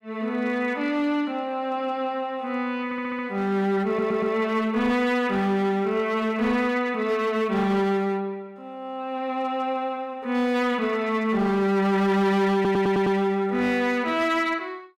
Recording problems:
distorted audio; hard clipping, signal-to-distortion ratio 11 dB
audio stuttering; at 3 s, at 4 s and at 13 s

